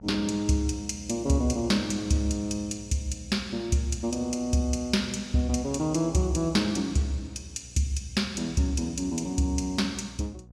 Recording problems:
electrical hum; 60 Hz, harmonics up to 720 Hz, SNR 21 dB

